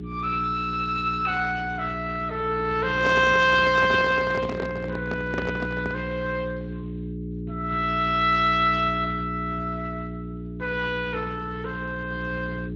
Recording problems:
lossy compression; Speex, log-spectral distance 3 dB
hum; 60 Hz, harmonics up to 420 Hz, SNR 9 dB
handling noise; from 3 to 6 s; peak +1 dB vs average level

